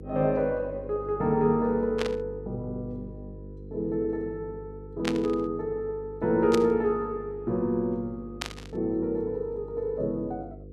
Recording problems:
electrical hum; 50 Hz, harmonics up to 500 Hz, SNR 15 dB
static burst; 4 times, first at 2 s; peak +2 dB vs average level

